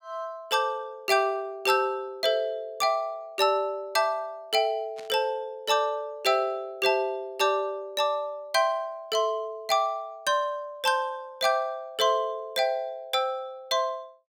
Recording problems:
burst of static; at 5 s; peak -14 dB vs average level

